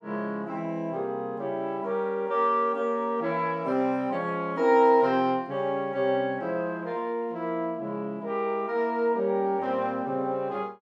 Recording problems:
none

